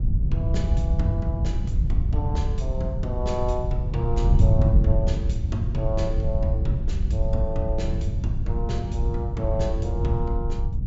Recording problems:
treble missing; nothing above 7.5 kHz
wind on the microphone; below 100 Hz, SNR -5 dB

